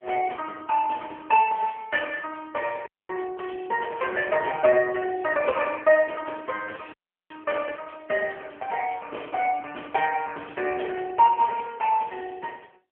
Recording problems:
telephone audio; 320 Hz to 3.1 kHz, AMR-NB
dropout; at 3 s and at 7 s

